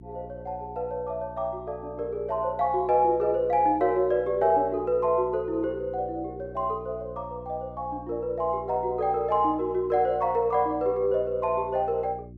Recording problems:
hum; 60 Hz, harmonics up to 360 Hz, SNR 19 dB

